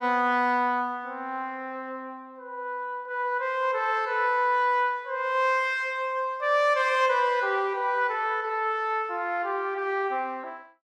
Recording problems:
none

